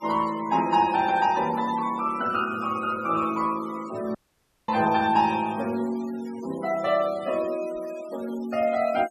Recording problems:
denoising artefacts; signal-to-artefact ratio 19 dB
dropout; at 4 s for 0.5 s

